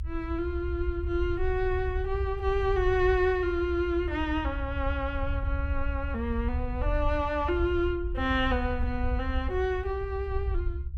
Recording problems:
low-frequency rumble; below 72 Hz, SNR 4 dB

